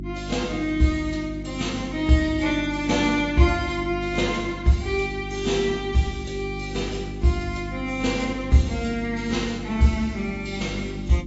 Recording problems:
codec artefacts; AAC, log-spectral distance 3 dB, nothing above 7.6 kHz
hum; 50 Hz, harmonics up to 350 Hz, SNR 10 dB

